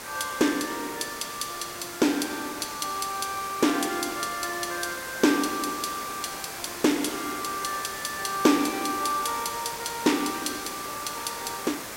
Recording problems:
background hiss; slope -3 dB per octave, SNR 8 dB

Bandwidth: 16 kHz